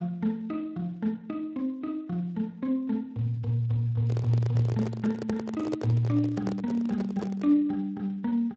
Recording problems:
codec artefacts; Speex, log-spectral distance 2 dB
microphone handling noise; from 4 to 7.5 s; peak 0 dB vs average level

